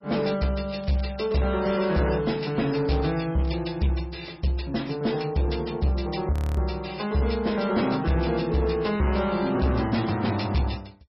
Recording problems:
lossy codec; MP3, log-spectral distance 5 dB, nothing above 5 kHz
distorted audio; soft clipping, signal-to-distortion ratio 11 dB
crackling; from 0.5 to 3.5 s; loose cable, SNR 22 dB
frozen audio; at 6.5 s

